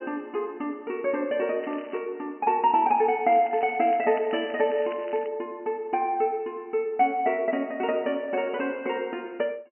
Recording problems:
treble cut off; nothing above 3 kHz
crackle; at 1.5 s and from 3.5 to 5.5 s; loose cable, SNR 23 dB

